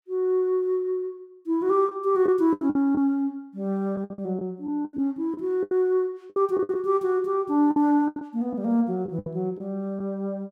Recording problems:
lost packets; 10% of the sound replaced, filled with the last packet

